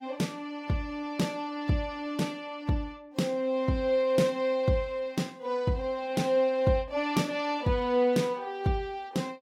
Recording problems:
lossy codec; AAC, log-spectral distance 2 dB, nothing above 16.5 kHz

